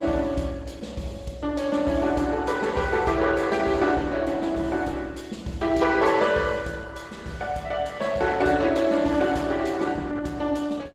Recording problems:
codec artefacts; Opus, log-spectral distance 4 dB, nothing above 17.7 kHz

